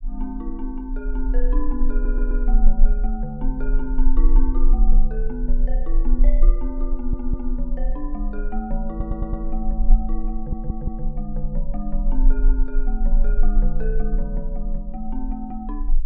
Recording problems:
low-frequency rumble; below 34 Hz, strongest tone 22 Hz, SNR -7 dB
audio stuttering; 4 times, first at 2 s

